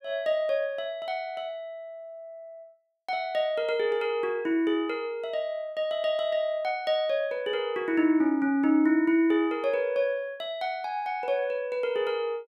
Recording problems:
none

